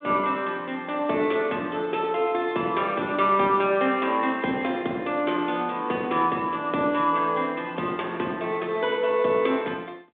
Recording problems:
phone line; 170 Hz to 3.7 kHz, G.726

